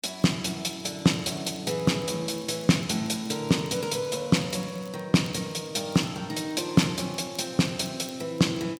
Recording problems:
crackle; vinyl, SNR 28 dB

